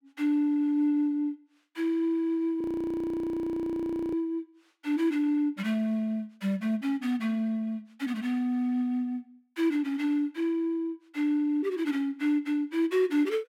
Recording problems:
audio freezing; at 2.5 s for 1.5 s

